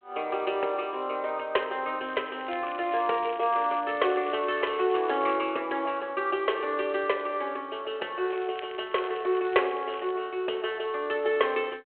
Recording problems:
phone line; 340 Hz to 3.3 kHz, G.726
crackling; from 2 to 5.5 s and from 8.5 to 10 s; loose cable, SNR 19 dB

